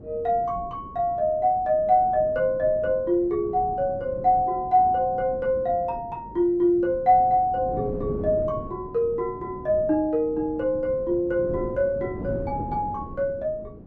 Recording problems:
wind on the microphone; below 340 Hz, SNR 14 dB

